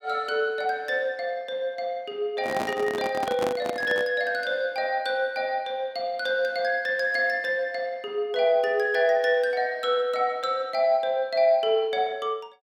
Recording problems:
microphone handling noise; from 2.5 to 4 s; peak -2 dB vs average level

